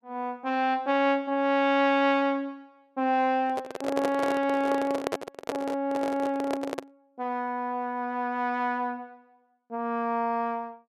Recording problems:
handling noise; from 3.5 to 7 s; peak +2 dB vs average level

